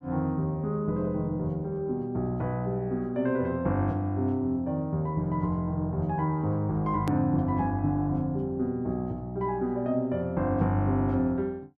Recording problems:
click at an edit; at 7 s

